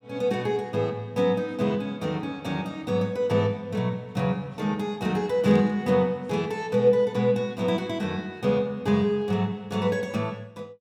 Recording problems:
static burst; at 5.5 s; peak -16 dB vs average level

